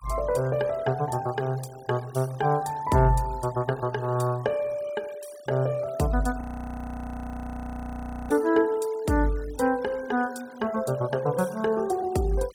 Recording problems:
denoising artefacts; signal-to-artefact ratio 22 dB
audio freezing; at 6.5 s for 2 s

